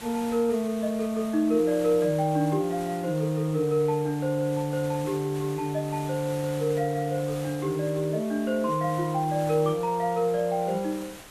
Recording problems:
background hiss; slope -3 dB per octave, SNR 17 dB

